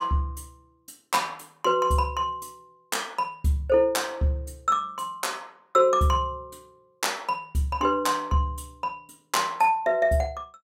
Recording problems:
none

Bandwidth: 16 kHz